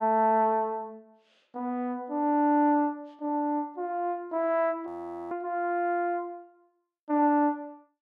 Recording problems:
frozen audio; at 5 s

